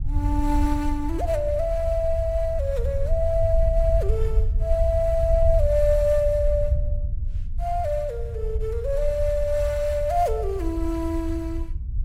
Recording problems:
wind on the microphone; below 72 Hz, SNR 3 dB

